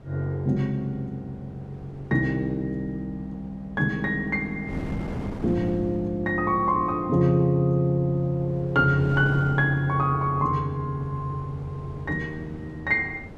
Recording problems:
wind on the microphone; below 380 Hz, SNR 16 dB

